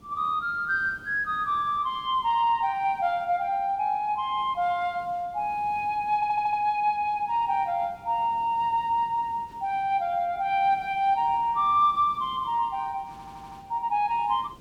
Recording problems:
background hiss; SNR 26 dB
stutter; at 6 s and at 13 s

